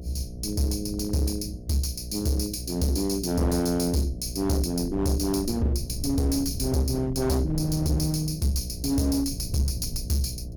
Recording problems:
distortion; hard clipping, uneven, signal-to-distortion ratio 7 dB
electrical hum; 60 Hz, harmonics up to 660 Hz, SNR 12 dB
rumble; below 130 Hz, SNR 13 dB

